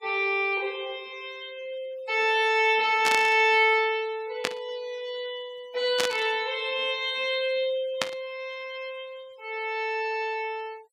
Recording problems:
denoising artefacts; signal-to-artefact ratio 26 dB
burst of static; 4 times, first at 3 s; peak +4 dB vs average level

